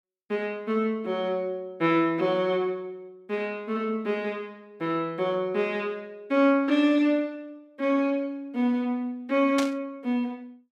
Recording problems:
static burst; at 9.5 s; peak 0 dB vs average level

